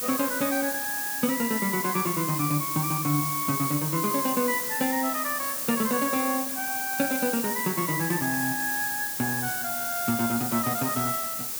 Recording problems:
background hiss; SNR 1 dB

